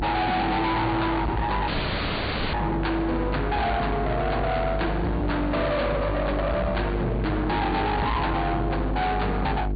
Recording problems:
treble missing; nothing above 4.7 kHz
distortion; hard clipping, signal-to-distortion ratio 6 dB
hum; 50 Hz, harmonics up to 700 Hz, SNR 4 dB
audio cutting out; at 1.5 s for 1 s

